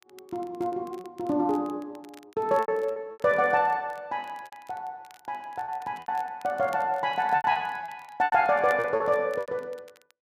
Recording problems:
crackling; vinyl, SNR 29 dB
packet loss; 10% of the sound replaced, filled with repeated pitch periods

